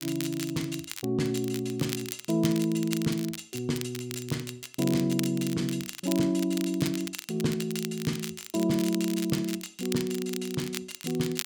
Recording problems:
crackle; vinyl, SNR 10 dB

